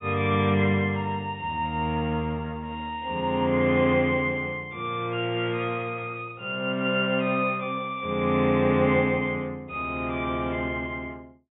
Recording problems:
low-pass filter; nothing above 3.5 kHz

